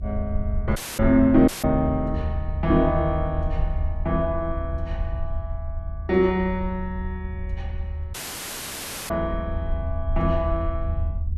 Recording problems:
rumble; below 78 Hz, SNR 6 dB
audio cutting out; at 1 s, at 1.5 s and at 8 s for 1 s

